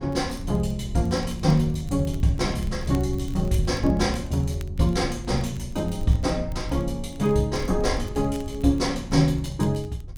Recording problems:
rumble; below 92 Hz, SNR 11 dB
crackling; vinyl, SNR 27 dB

